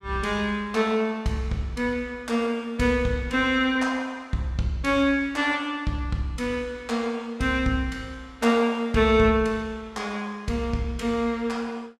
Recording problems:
none

